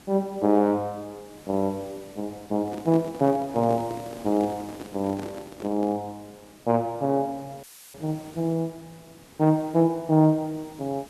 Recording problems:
background hiss; SNR 23 dB
handling noise; from 2.5 to 6 s; peak -9 dB vs average level
dropout; at 7.5 s; filled with static

